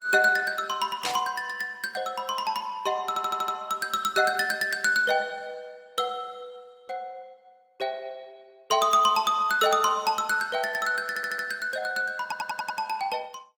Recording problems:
lossy codec; Opus, log-spectral distance 3 dB, nothing above 19 kHz
burst of static; at 1 s; peak +1 dB vs average level
audio stuttering; at 3 s, at 11 s and at 12 s

